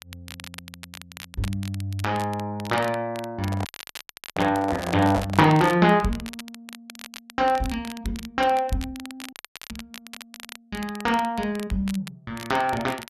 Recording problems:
crackle; vinyl, SNR 16 dB
microphone handling noise; from 3.5 to 5.5 s; peak -1 dB vs average level
dropout; at 3.5 s for 0.5 s and at 9.5 s

